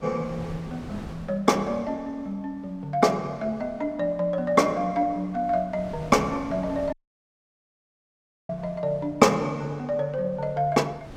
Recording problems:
wind on the microphone; below 570 Hz, SNR 19 dB
dropout; at 7 s for 1.5 s

